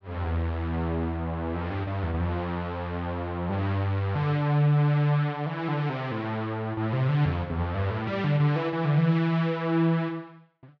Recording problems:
none

